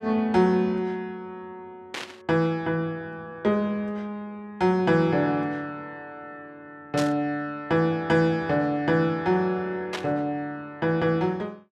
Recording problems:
static burst; at 2 s, at 7 s and at 10 s; peak -2 dB vs average level

